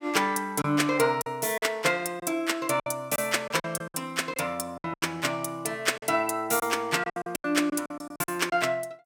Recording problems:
packet loss; 11% of the sound replaced, filled with silence

